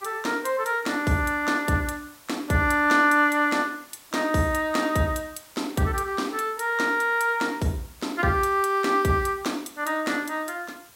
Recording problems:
background hiss; SNR 25 dB

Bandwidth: 16 kHz